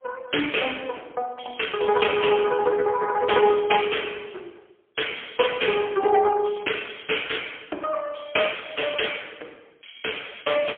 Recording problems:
telephone audio; 280 Hz to 3.3 kHz, AMR-NB, then MP3

